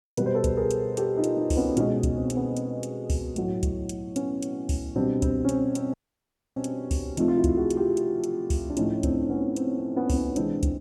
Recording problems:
dropout; at 6 s for 0.5 s

